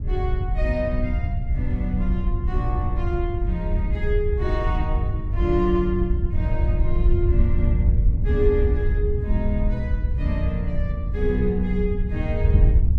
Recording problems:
wind noise; below 82 Hz, SNR -3 dB

